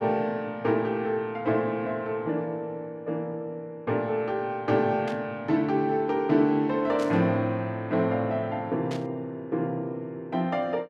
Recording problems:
static burst; at 5 s, at 7 s and at 9 s; peak -9 dB vs average level

